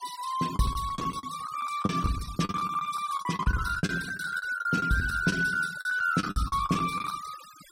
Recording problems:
noise reduction artefacts; signal-to-artefact ratio 14 dB
lost packets; 16% of the sound replaced, filled with the last packet

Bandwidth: 16 kHz